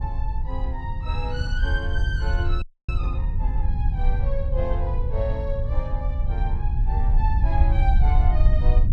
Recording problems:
rumble; below 68 Hz, SNR -9 dB
frozen audio; at 2.5 s

